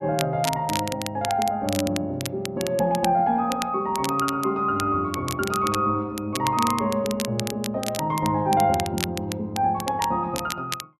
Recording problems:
crackling; vinyl, SNR 10 dB

